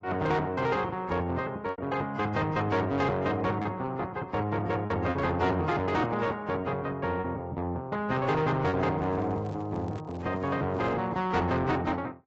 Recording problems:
lossy compression; AAC, log-spectral distance 2 dB, nothing above 7.6 kHz
distorted audio; soft clipping, signal-to-distortion ratio 11 dB
packet loss; 3% of the sound replaced, filled with repeated pitch periods
microphone handling noise; from 9 to 11 s; peak -10 dB vs average level

